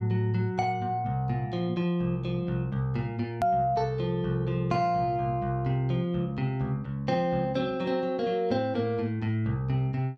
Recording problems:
hard cut with a click; at 3.5 s

